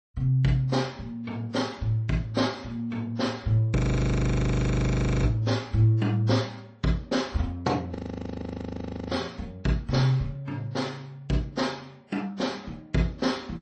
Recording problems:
lossy compression; MP3, then AAC, log-spectral distance 2 dB, nothing above 8.2 kHz
audio freezing; at 4 s for 1.5 s and at 8 s for 1 s

